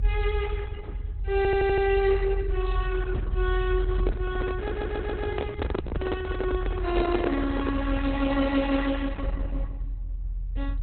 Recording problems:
lossy compression; Opus, log-spectral distance 2 dB, nothing above 4 kHz
rumble; below 66 Hz, strongest tone 42 Hz, SNR 4 dB
stutter; at 1.5 s and at 4.5 s
microphone handling noise; from 4 to 8 s; peak +3 dB vs average level

